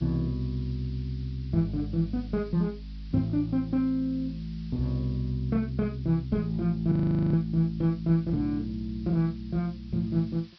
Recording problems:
treble cut off; nothing above 5.5 kHz
hiss; slope +3 dB per octave, SNR 28 dB
frozen audio; at 7 s

